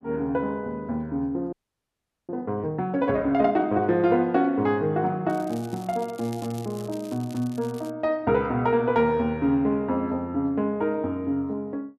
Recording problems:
frozen audio; at 1.5 s for 1 s
crackling; from 5.5 to 8 s; loose cable, SNR 22 dB

